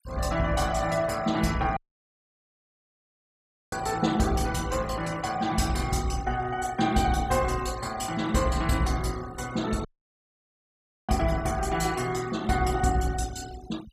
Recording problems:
noise reduction artefacts; signal-to-artefact ratio 17 dB
audio cutting out; at 2 s for 2 s and at 10 s for 1 s

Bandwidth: 15 kHz